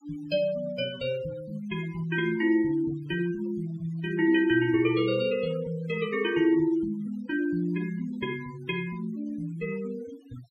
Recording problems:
noise reduction artefacts; signal-to-artefact ratio 20 dB

